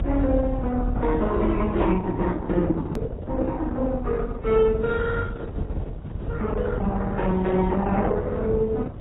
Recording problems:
lossy compression; Opus, then AAC, log-spectral distance 2 dB, nothing above 3.8 kHz
hum; 60 Hz, harmonics up to 720 Hz, SNR 17 dB
low-frequency rumble; below 82 Hz, strongest tone 42 Hz, SNR 2 dB
edit click; at 3 s

